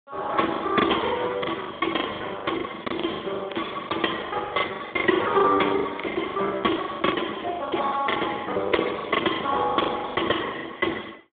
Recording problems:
phone line; 240 Hz to 2.1 kHz, Speex
lost packets; 19% of the sound replaced, filled with the last packet

